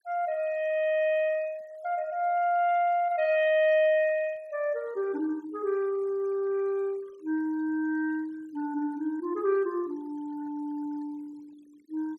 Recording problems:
denoising artefacts; signal-to-artefact ratio 27 dB

